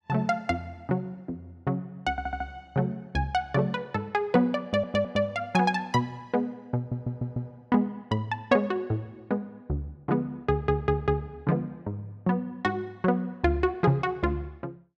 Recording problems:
stutter; 4 times, first at 2 s

